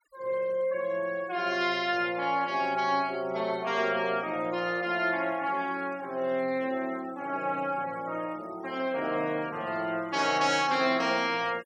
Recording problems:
noise reduction artefacts; signal-to-artefact ratio 23 dB

